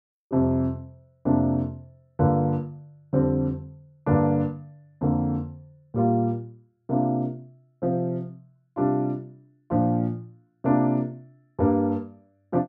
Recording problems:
none

